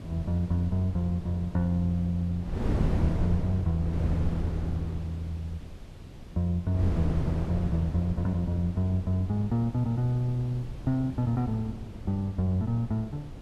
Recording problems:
hiss; SNR 30 dB
wind on the microphone; below 220 Hz, SNR 7 dB

